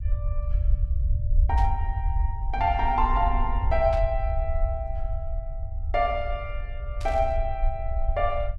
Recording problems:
rumble; below 68 Hz, SNR 1 dB
static burst; at 1.5 s, at 4 s and at 7 s; peak -10 dB vs average level

